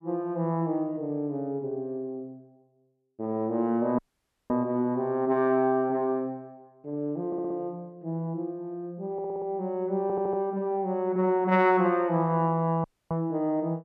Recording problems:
audio cutting out; at 4 s for 0.5 s and at 13 s
audio stuttering; at 7.5 s, at 9 s and at 10 s

